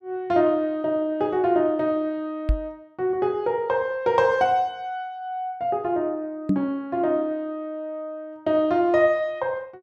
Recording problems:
microphone thump; at 2.5 s and at 6.5 s; peak +6 dB vs average level

